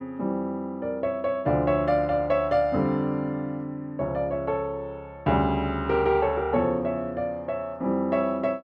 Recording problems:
none

